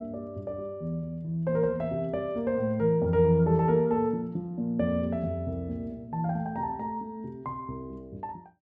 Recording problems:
none

